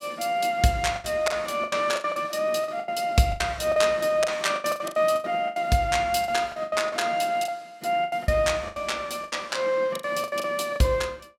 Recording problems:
lost packets; 16% of the sound replaced, filled with the last packet

